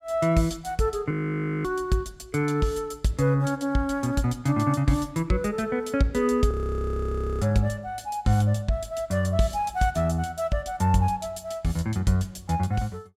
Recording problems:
frozen audio; at 1 s for 0.5 s and at 6.5 s for 1 s

